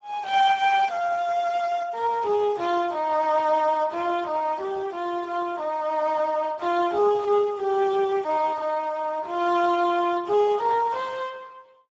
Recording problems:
lossy codec; Speex, log-spectral distance 3 dB

